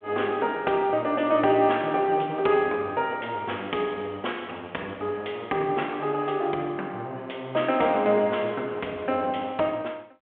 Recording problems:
phone line; 260 Hz to 3.4 kHz, G.726

